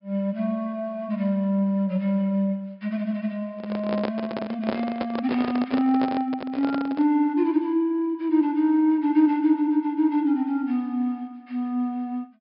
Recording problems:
low-pass filter; nothing above 5.5 kHz
microphone handling noise; from 3.5 to 7 s; peak 0 dB vs average level

